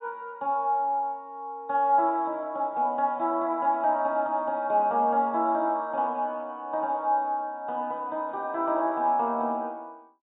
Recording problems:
low-pass filter; nothing above 4 kHz

